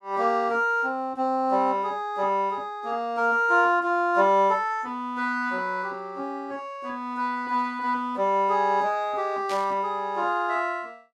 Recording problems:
static burst; at 9.5 s; peak -8 dB vs average level

